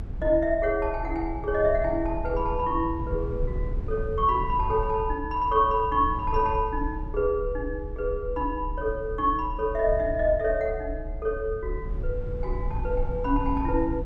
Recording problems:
rumble; below 72 Hz, strongest tone 34 Hz, SNR 8 dB

